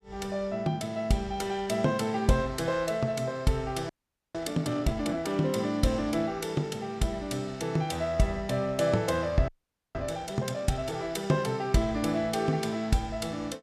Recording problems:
audio freezing; at 4 s and at 9.5 s

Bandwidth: 14.5 kHz